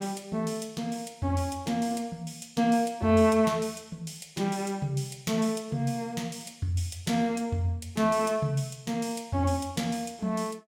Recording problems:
none

